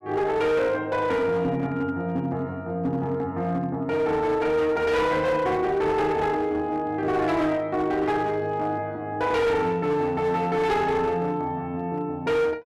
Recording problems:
distorted audio; hard clipping, uneven, signal-to-distortion ratio 10 dB

